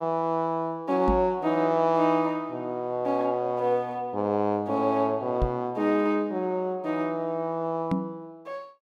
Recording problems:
knock on the microphone; at 1 s, at 5.5 s and at 8 s; peak +3 dB vs average level

